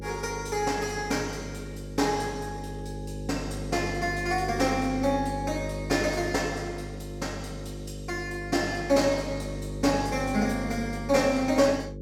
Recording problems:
mains hum; 50 Hz, harmonics up to 550 Hz, SNR 9 dB

